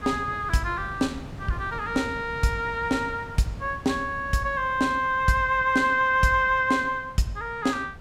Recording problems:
wind on the microphone; below 330 Hz, SNR 17 dB

